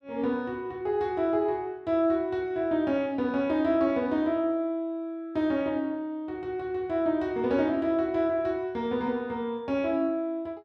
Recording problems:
none

